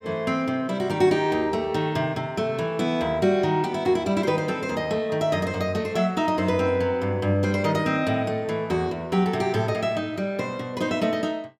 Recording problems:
none

